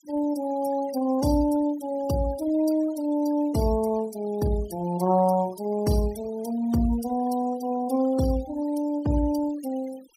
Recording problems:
denoising artefacts; signal-to-artefact ratio 19 dB

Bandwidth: 15.5 kHz